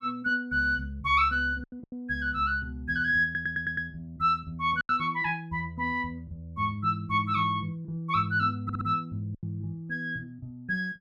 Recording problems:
packet loss; 3% of the sound replaced, filled with silence
stutter; at 3 s and at 8.5 s

